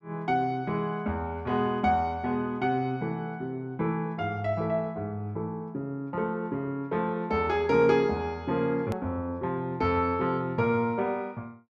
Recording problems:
edit click; at 9 s

